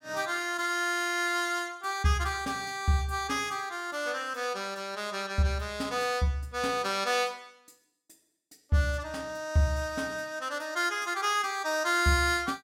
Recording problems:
none

